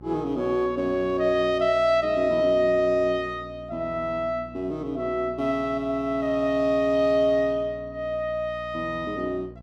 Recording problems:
electrical hum; 60 Hz, harmonics up to 840 Hz, SNR 20 dB

